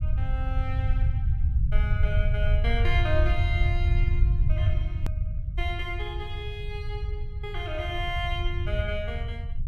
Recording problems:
low-frequency rumble; below 86 Hz, SNR -6 dB
click at an edit; at 5 s

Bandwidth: 15 kHz